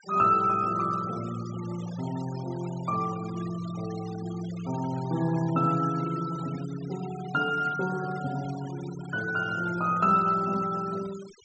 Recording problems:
treble cut off; nothing above 8 kHz
noise reduction artefacts; signal-to-artefact ratio 18 dB

